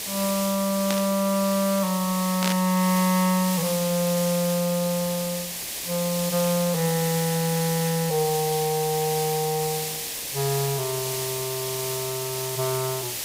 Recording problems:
hiss; SNR 4 dB
static burst; at 1 s and at 2.5 s; peak +2 dB vs average level

